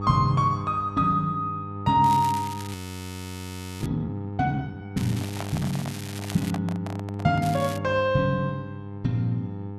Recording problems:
electrical hum; 50 Hz, harmonics up to 900 Hz, SNR 9 dB
crackling; from 2 to 4 s, from 5 to 6.5 s and at 7.5 s; loose cable, SNR 14 dB
frozen audio; at 2.5 s for 1 s
handling noise; from 5 to 7.5 s; peak -4 dB vs average level

